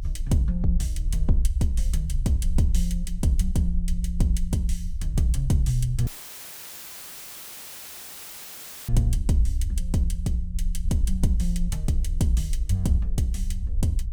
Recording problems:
low-frequency rumble; below 58 Hz, strongest tone 30 Hz, SNR 2 dB
dropout; at 6 s for 3 s; filled with static

